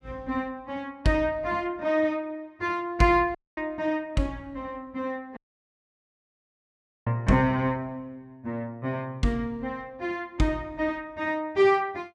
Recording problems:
dropout; at 3.5 s and at 5.5 s for 1.5 s

